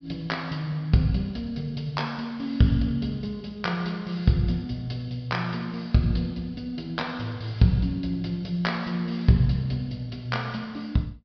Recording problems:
treble missing; nothing above 5.5 kHz

